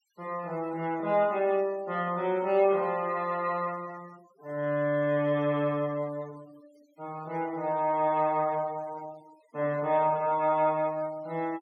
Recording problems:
noise reduction artefacts; signal-to-artefact ratio 25 dB

